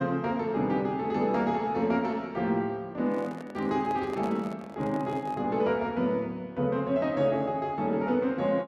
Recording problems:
handling noise; from 3 to 5.5 s; peak -8 dB vs average level

